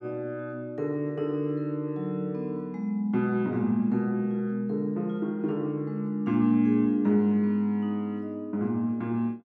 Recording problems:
none

